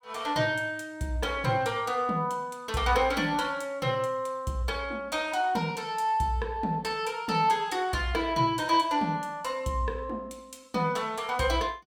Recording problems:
none

